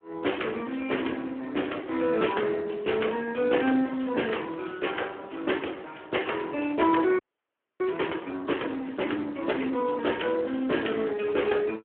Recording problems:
phone line; 220 Hz to 3.3 kHz, Speex
audio freezing; at 7 s for 0.5 s

